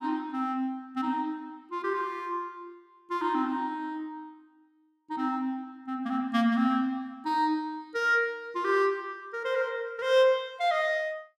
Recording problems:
none

